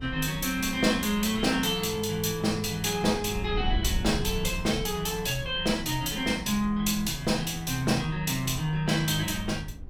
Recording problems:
wind noise; below 76 Hz, SNR 13 dB

